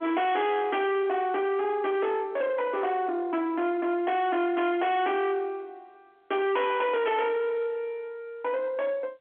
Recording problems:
telephone audio; 240 Hz to 3.6 kHz, G.711
distortion; soft clipping, signal-to-distortion ratio 7 dB

